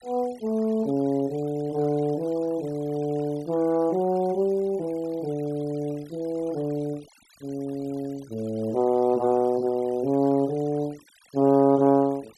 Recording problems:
denoising artefacts; signal-to-artefact ratio 26 dB

